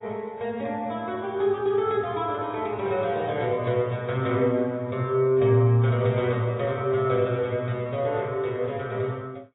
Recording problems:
lossy compression; AAC, log-spectral distance 2 dB, nothing above 3.8 kHz

